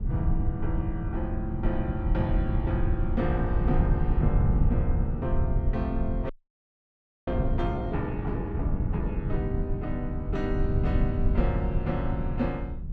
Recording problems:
low-frequency rumble; below 110 Hz, SNR -3 dB
wind on the microphone; below 440 Hz, SNR 22 dB
audio freezing; at 6.5 s for 1 s

